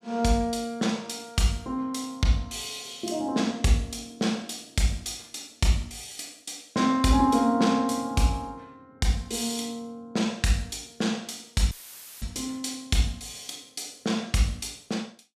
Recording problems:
audio cutting out; at 12 s for 0.5 s; filled with static

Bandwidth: 14.5 kHz